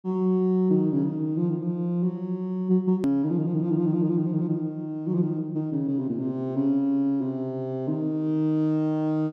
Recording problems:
hard cut with a click; at 3 s

